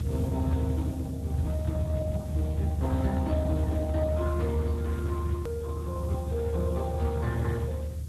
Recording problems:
lossy codec; Speex, log-spectral distance 3 dB
hiss; SNR 21 dB
rumble; below 120 Hz, strongest tone 76 Hz, SNR -2 dB
edit click; at 5.5 s

